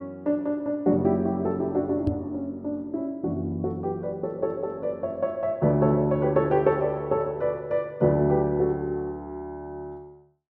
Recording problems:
microphone thump; at 2 s; peak +3 dB vs average level

